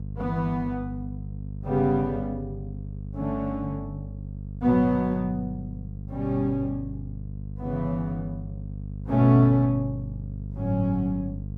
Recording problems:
mains hum; 50 Hz, harmonics up to 450 Hz, SNR 10 dB

